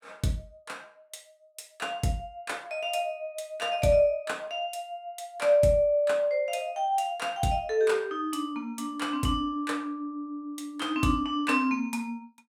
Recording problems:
none

